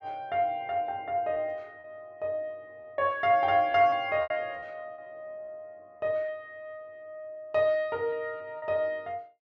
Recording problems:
packet loss; 5% of the sound replaced, filled with repeated pitch periods

